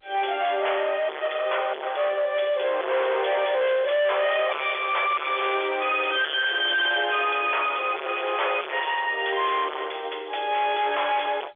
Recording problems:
telephone audio; 340 Hz to 3.5 kHz, G.711
distorted audio; hard clipping, signal-to-distortion ratio 5 dB

